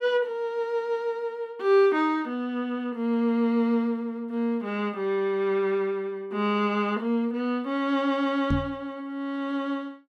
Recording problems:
microphone bump; at 8.5 s; peak +2 dB vs average level

